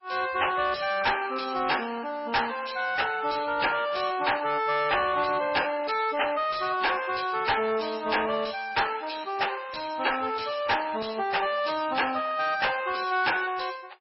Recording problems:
lossy codec; MP3, log-spectral distance 8 dB, nothing above 5.5 kHz
distorted audio; soft clipping, signal-to-distortion ratio 8 dB

